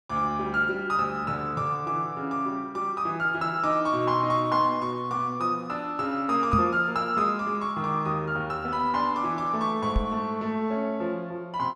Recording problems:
microphone bump; at 6.5 s and at 10 s; peak +5 dB vs average level

